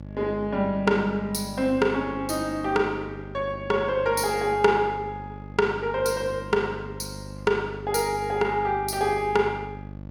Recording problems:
electrical hum; 50 Hz, harmonics up to 900 Hz, SNR 14 dB

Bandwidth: 17 kHz